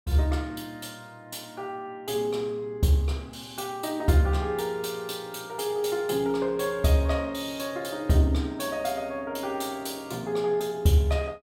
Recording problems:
none

